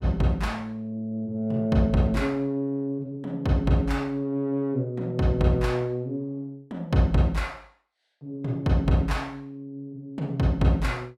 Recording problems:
none

